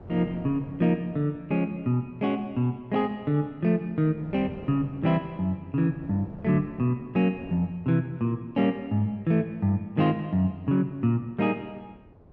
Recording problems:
wind noise; below 430 Hz, SNR 22 dB

